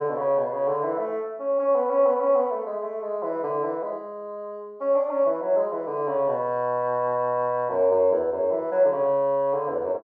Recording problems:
none

